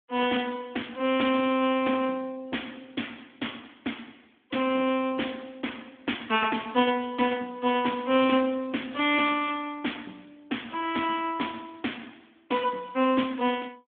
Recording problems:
phone line; 170 Hz to 3.5 kHz, Speex

